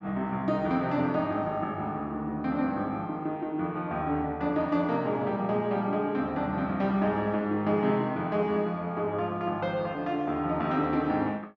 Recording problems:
none

